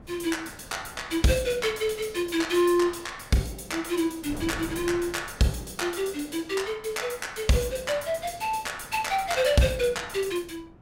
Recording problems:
wind noise; below 410 Hz, SNR 20 dB

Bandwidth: 16.5 kHz